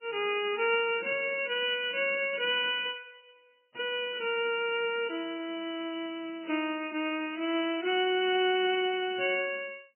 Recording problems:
lossy codec; MP3, log-spectral distance 5 dB, nothing above 2.4 kHz

